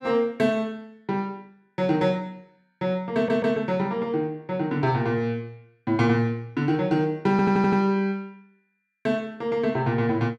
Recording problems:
audio stuttering; at 3 s and at 7.5 s

